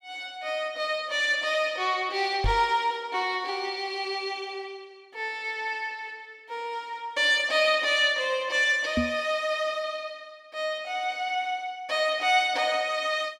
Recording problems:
microphone thump; at 2.5 s and at 9 s; peak +3 dB vs average level

